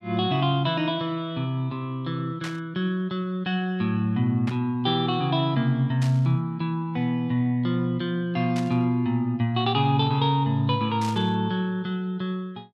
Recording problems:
burst of static; 5 times, first at 2.5 s; peak -7 dB vs average level

